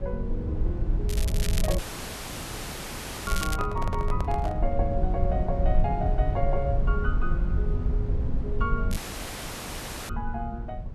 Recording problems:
rumble; below 76 Hz, SNR -3 dB
crackle; from 1 to 3.5 s and at 9 s; loose cable, SNR 5 dB
audio cutting out; at 2 s for 1.5 s and at 9 s for 1 s
handling noise; from 3.5 to 4.5 s; peak +1 dB vs average level

